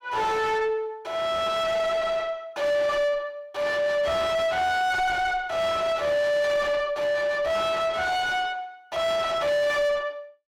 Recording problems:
distorted audio; soft clipping, signal-to-distortion ratio 6 dB

